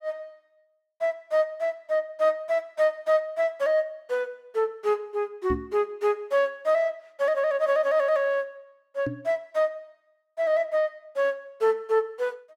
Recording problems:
microphone bump; at 5.5 s and at 9 s; peak -1 dB vs average level

